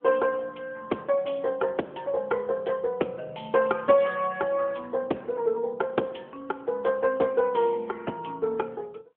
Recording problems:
phone line; 240 Hz to 3.4 kHz, AMR-NB

